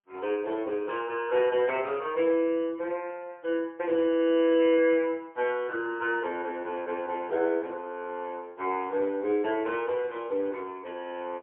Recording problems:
telephone audio; 300 Hz to 3.4 kHz, AMR-NB, then MP3

